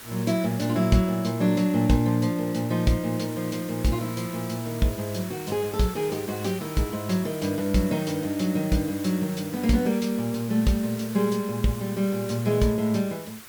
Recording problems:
hiss; SNR 15 dB

